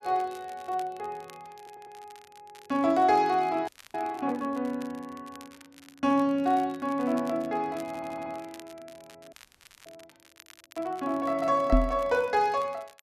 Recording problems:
crackling; vinyl, SNR 25 dB
audio stuttering; at 1.5 s and at 8 s
audio freezing; at 3.5 s and at 9.5 s for 0.5 s
knock on the microphone; at 12 s; peak +8 dB vs average level

